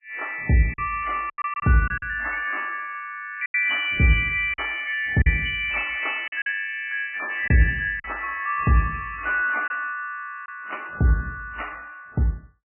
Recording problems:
lossy codec; MP3, then MP3, log-spectral distance 4 dB, nothing above 3 kHz
packet loss; 5% of the sound replaced, filled with silence

